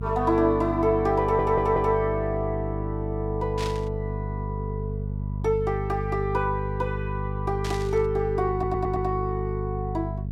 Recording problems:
hum; 50 Hz, harmonics up to 400 Hz, SNR 5 dB
audio stuttering; at 1 s and at 8.5 s
burst of static; at 3.5 s and at 7.5 s; peak -5 dB vs average level

